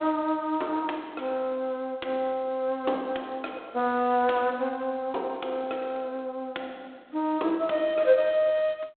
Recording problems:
telephone audio; 280 Hz to 3.7 kHz, G.726

